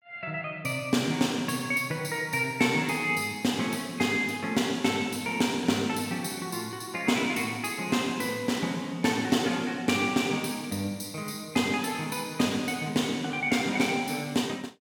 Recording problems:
none

